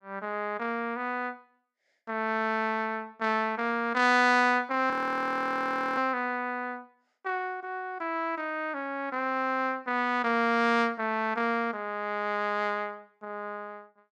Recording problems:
audio freezing; at 5 s for 1 s

